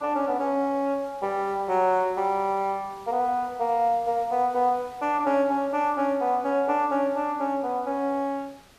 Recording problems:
background hiss; slope -3 dB per octave, SNR 26 dB

